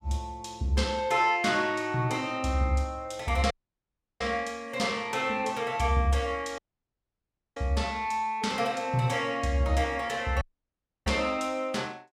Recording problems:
dropout; at 3.5 s for 0.5 s, at 6.5 s for 1 s and at 10 s for 0.5 s

